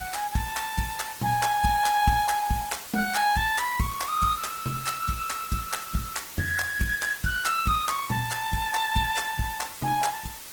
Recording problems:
lossy codec; Opus, log-spectral distance 8 dB, nothing above 18.9 kHz
hiss; slope 0 dB per octave, SNR 12 dB

